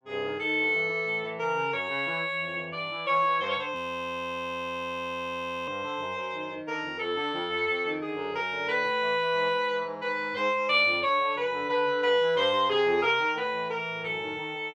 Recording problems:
audio freezing; at 4 s for 2 s

